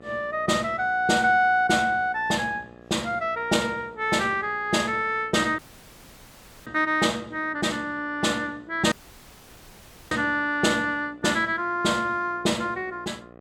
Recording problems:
hum; 60 Hz, harmonics up to 2 kHz, SNR 25 dB
audio cutting out; at 5.5 s for 1 s and at 9 s for 1 s

